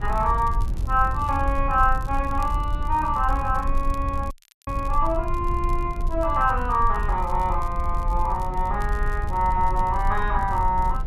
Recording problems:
rumble; below 62 Hz, SNR 5 dB
crackling; vinyl, SNR 27 dB
dropout; at 4.5 s

